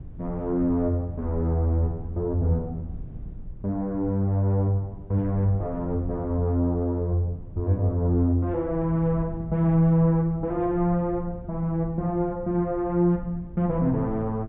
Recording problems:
treble cut off; nothing above 4 kHz
rumble; below 110 Hz, SNR 16 dB

